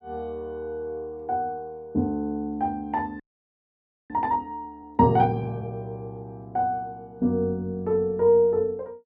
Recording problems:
audio freezing; at 3 s for 1 s

